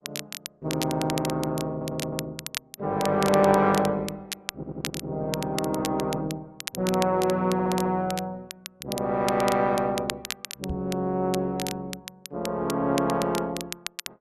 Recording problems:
codec artefacts; Opus, log-spectral distance 2 dB
crackling; vinyl, SNR 10 dB
audio stuttering; at 1.5 s, at 4.5 s and at 7.5 s
microphone thump; at 11 s; peak -3 dB vs average level

